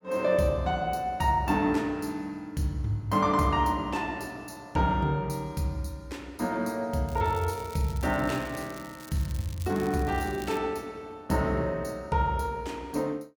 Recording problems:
crackle; from 7 to 11 s; loose cable, SNR 19 dB

